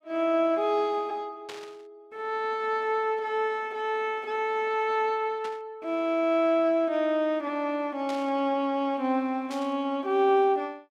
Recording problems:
burst of static; 4 times, first at 1.5 s; peak -10 dB vs average level

